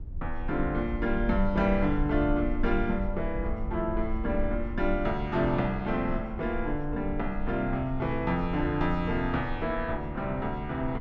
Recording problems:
rumble; below 54 Hz, SNR 8 dB

